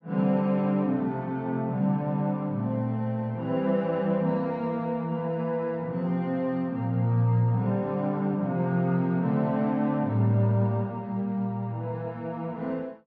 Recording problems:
treble missing; nothing above 8 kHz

